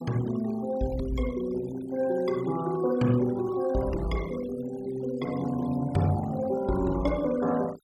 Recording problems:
noise reduction artefacts; signal-to-artefact ratio 19 dB

